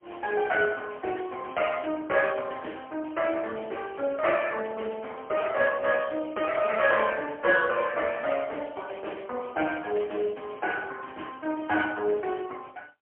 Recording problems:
phone line; 320 Hz to 3.2 kHz, AMR-NB, then MP3

